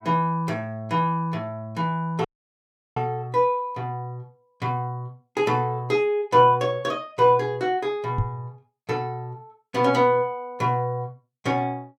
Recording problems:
dropout; at 2.5 s for 0.5 s
microphone bump; at 8 s; peak +3 dB vs average level

